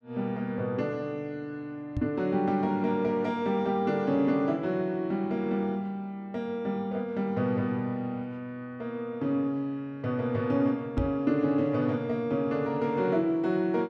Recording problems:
microphone thump; at 2 s and at 11 s; peak +1 dB vs average level

